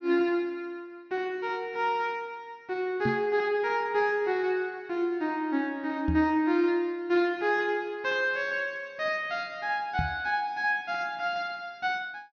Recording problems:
low-pass filter; nothing above 6.5 kHz
microphone thump; at 3 s, at 6 s and at 10 s; peak +2 dB vs average level

